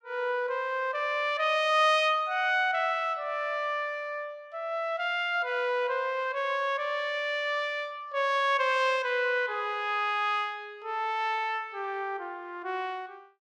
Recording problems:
none

